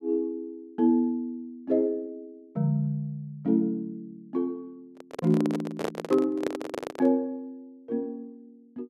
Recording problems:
handling noise; from 5 to 7 s; peak +2 dB vs average level

